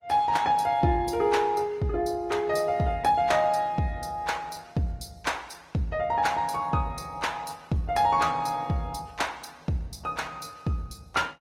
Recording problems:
lossy codec; Opus, log-spectral distance 3 dB, nothing above 16.5 kHz

